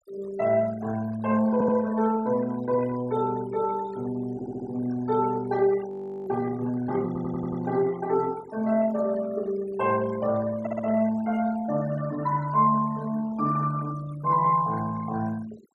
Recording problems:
noise reduction artefacts; signal-to-artefact ratio 19 dB
stutter; 4 times, first at 1.5 s
frozen audio; at 6 s

